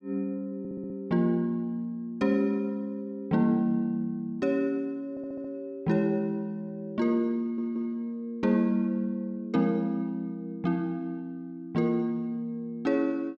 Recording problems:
audio stuttering; at 0.5 s, at 5 s and at 7.5 s

